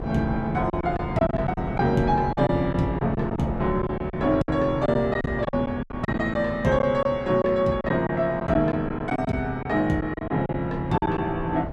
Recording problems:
wind on the microphone; below 430 Hz, SNR 10 dB
packet loss; 10% of the sound replaced, filled with silence

